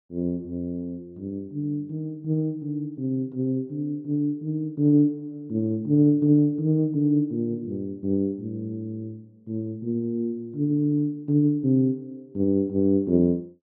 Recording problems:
none

